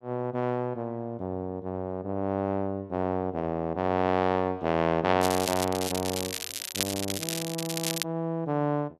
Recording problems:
crackling; from 5 to 8 s; loose cable, SNR 3 dB

